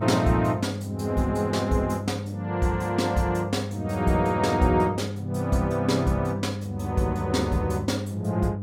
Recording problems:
electrical hum; 50 Hz, harmonics up to 700 Hz, SNR 7 dB

